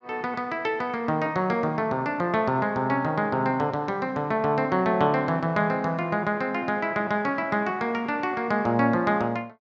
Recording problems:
none

